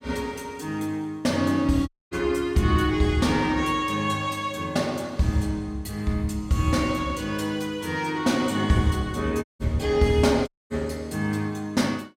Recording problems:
dropout; at 2 s, at 9.5 s and at 10 s

